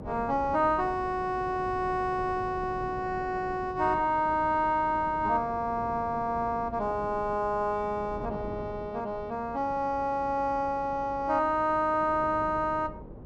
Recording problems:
hum; 50 Hz, harmonics up to 600 Hz, SNR 22 dB
wind on the microphone; below 410 Hz, SNR 15 dB

